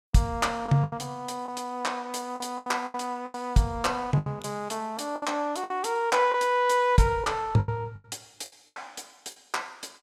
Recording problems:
packet loss; 10% of the sound replaced, filled with the last packet

